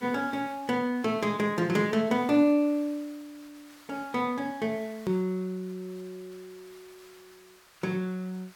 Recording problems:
hiss; SNR 25 dB
click at an edit; at 5 s

